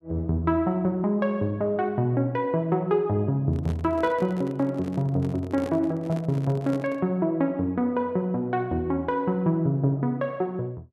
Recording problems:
handling noise; from 3.5 to 7 s; peak -7 dB vs average level

